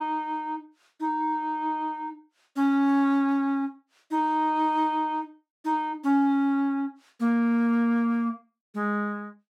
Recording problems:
none

